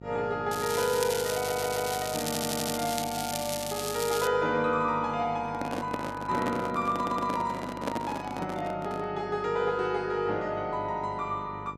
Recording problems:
mains hum; 50 Hz, harmonics up to 950 Hz, SNR 15 dB
crackle; from 0.5 to 4.5 s; loose cable, SNR 5 dB
stutter; at 1.5 s, at 2.5 s and at 7 s
microphone handling noise; from 5.5 to 9 s; peak +2 dB vs average level

